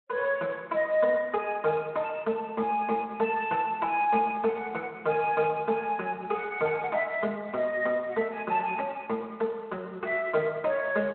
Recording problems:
phone line; 240 Hz to 3.9 kHz, Speex

